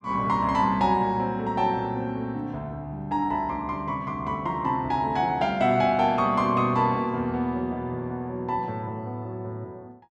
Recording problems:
none

